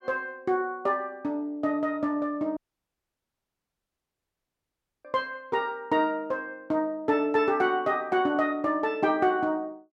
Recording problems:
dropout; at 2.5 s for 2.5 s

